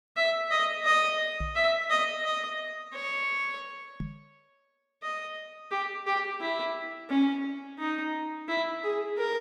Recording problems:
microphone thump; at 1.5 s and at 4 s; peak -3 dB vs average level

